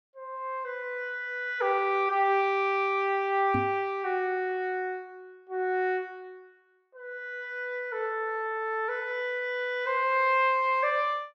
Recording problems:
microphone thump; at 3.5 s; peak 0 dB vs average level

